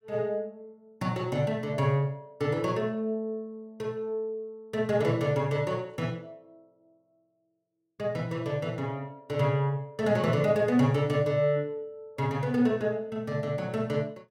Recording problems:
none

